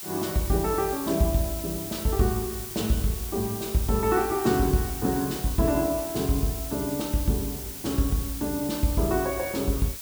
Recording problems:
hiss; slope +2 dB per octave, SNR 8 dB

